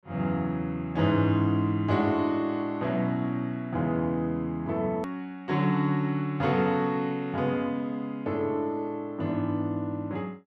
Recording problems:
edit click; at 5 s

